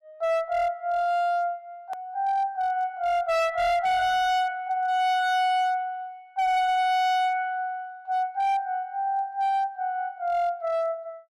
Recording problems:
distortion; hard clipping, signal-to-distortion ratio 10 dB
click at an edit; at 2 s

